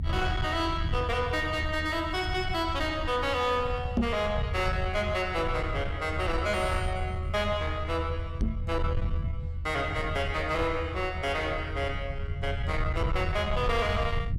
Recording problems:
distortion; soft clipping, signal-to-distortion ratio 10 dB
low-frequency rumble; below 100 Hz, SNR 4 dB
knock on the microphone; at 4 s and at 8.5 s; peak +6 dB vs average level

